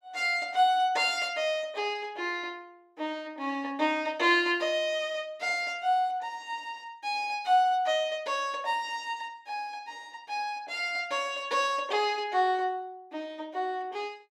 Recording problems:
none

